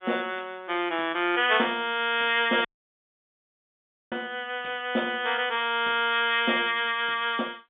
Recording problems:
telephone audio; 240 Hz to 3.6 kHz, G.711
dropout; at 2.5 s for 1.5 s

